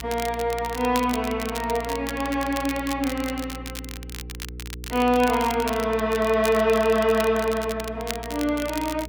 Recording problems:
electrical hum; 60 Hz, harmonics up to 480 Hz, SNR 15 dB
crackling; vinyl, SNR 13 dB

